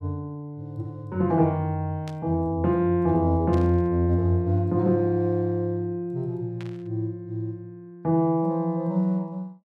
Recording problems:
burst of static; at 2 s, at 3.5 s and at 6.5 s; peak -14 dB vs average level

